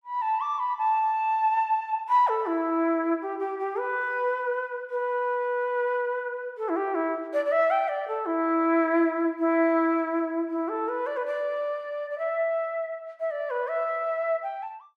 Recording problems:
none

